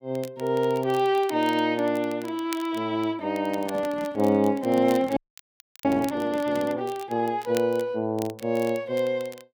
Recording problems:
crackling; vinyl, SNR 20 dB
microphone handling noise; from 3.5 to 7 s; peak -8 dB vs average level
audio freezing; at 5 s for 0.5 s

